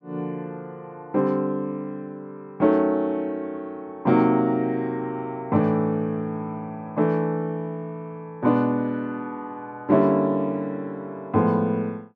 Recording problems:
none

